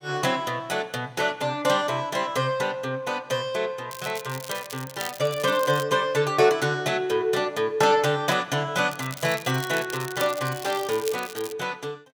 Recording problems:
crackle; from 4 to 6 s and from 9 to 12 s; loose cable, SNR 13 dB

